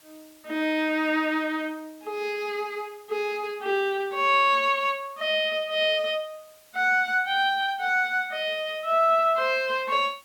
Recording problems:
background hiss; slope 0 dB per octave, SNR 29 dB

